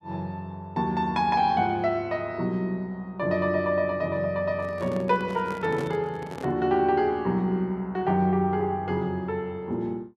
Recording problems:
handling noise; from 4.5 to 6.5 s; peak -5 dB vs average level

